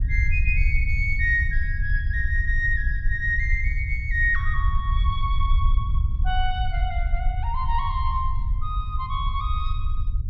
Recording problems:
rumble; below 66 Hz, SNR -1 dB

